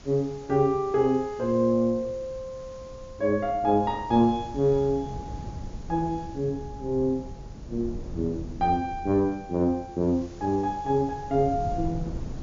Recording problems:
treble cut off; nothing above 7.2 kHz
background hiss; SNR 27 dB
wind on the microphone; below 170 Hz, SNR 15 dB

